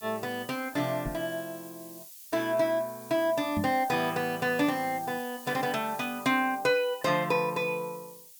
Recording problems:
background hiss; SNR 17 dB
microphone thump; at 1 s and at 3.5 s; peak 0 dB vs average level

